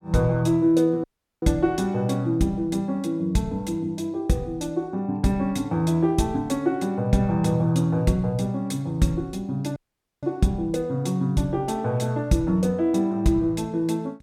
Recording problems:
dropout; at 1 s and at 10 s

